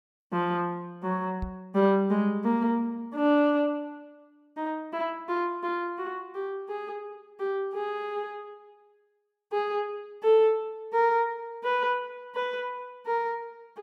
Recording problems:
microphone thump; at 1.5 s; peak -3 dB vs average level

